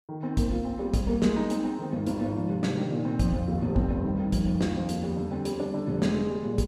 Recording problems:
none

